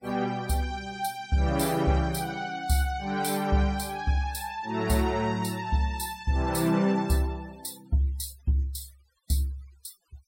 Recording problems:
noise reduction artefacts; signal-to-artefact ratio 22 dB

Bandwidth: 16 kHz